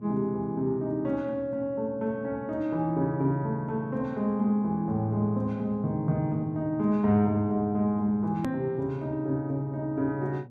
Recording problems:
hum; 60 Hz, harmonics up to 600 Hz, SNR 20 dB
edit click; at 8.5 s

